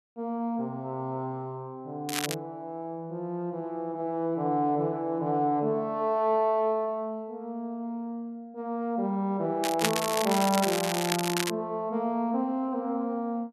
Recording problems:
crackling; at 2 s and from 9.5 to 12 s; loose cable, SNR 2 dB

